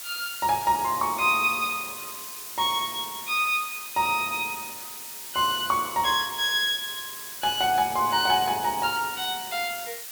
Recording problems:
background hiss; slope +3 dB per octave, SNR 10 dB

